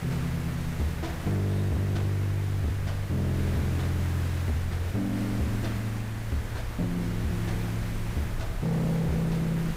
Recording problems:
distortion; hard clipping, uneven, signal-to-distortion ratio 8 dB
hiss; SNR 11 dB
low-frequency rumble; below 80 Hz, SNR 13 dB

